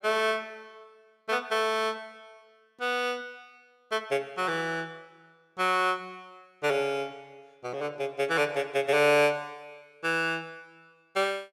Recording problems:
none

